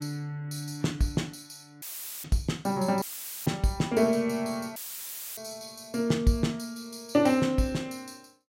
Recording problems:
audio cutting out; at 2 s, at 3 s and at 5 s for 0.5 s; filled with static

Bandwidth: 16 kHz